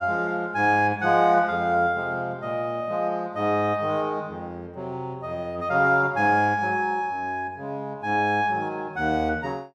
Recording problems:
none

